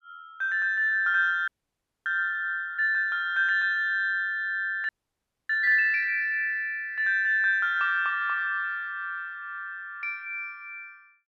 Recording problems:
frozen audio; at 1.5 s for 0.5 s and at 5 s for 0.5 s

